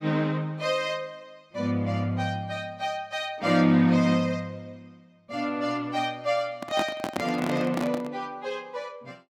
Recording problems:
microphone handling noise; from 6.5 to 8 s; peak +1 dB vs average level

